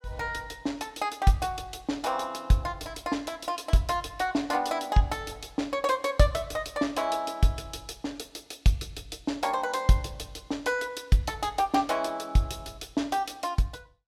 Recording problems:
none

